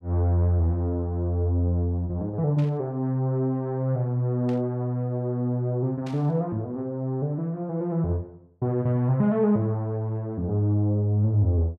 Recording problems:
burst of static; at 2.5 s, at 4.5 s and at 6 s; peak -15 dB vs average level

